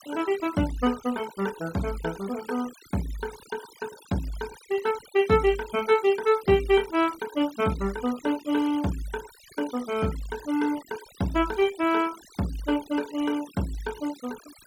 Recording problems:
noise reduction artefacts; signal-to-artefact ratio 18 dB

